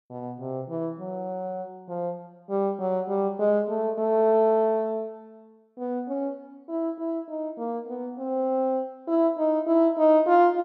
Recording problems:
none

